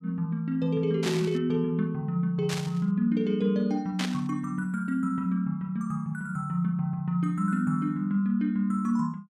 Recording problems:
static burst; at 1 s, at 2.5 s and at 4 s; peak -1 dB vs average level

